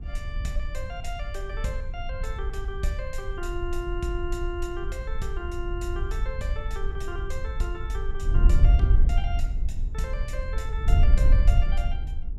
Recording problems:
wind on the microphone; below 60 Hz, SNR -7 dB

